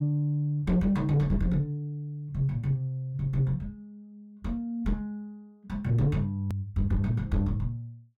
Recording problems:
distortion; soft clipping, signal-to-distortion ratio 11 dB
edit click; at 6.5 s

